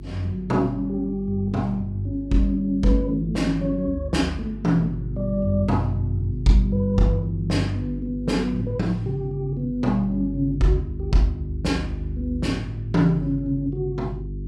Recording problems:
hum; 50 Hz, harmonics up to 400 Hz, SNR 10 dB

